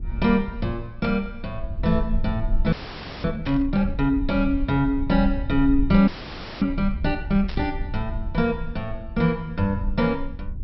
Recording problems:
treble missing; nothing above 5.6 kHz
low-frequency rumble; below 56 Hz, SNR 8 dB
static burst; at 1 s, at 3.5 s and at 7.5 s; peak -10 dB vs average level
frozen audio; at 2.5 s for 0.5 s and at 6 s for 0.5 s

